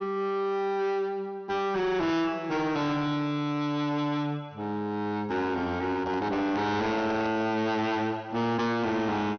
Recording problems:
treble missing; nothing above 6.2 kHz
distorted audio; hard clipping, uneven, signal-to-distortion ratio 6 dB
microphone handling noise; from 6 to 7.5 s; peak -6 dB vs average level

